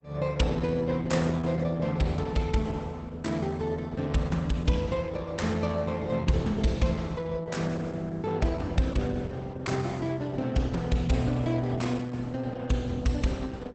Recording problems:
lossy codec; Opus, log-spectral distance 3 dB, nothing above 8 kHz

